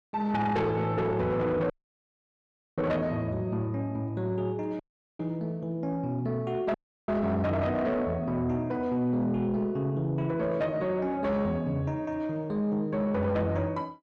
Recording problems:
distorted audio; soft clipping, signal-to-distortion ratio 11 dB
dropout; at 1.5 s for 1 s, at 5 s and at 6.5 s

